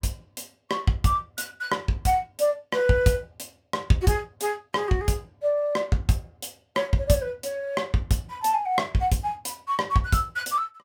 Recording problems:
none

